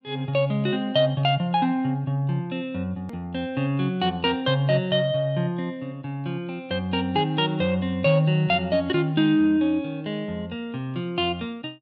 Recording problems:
click at an edit; at 3 s

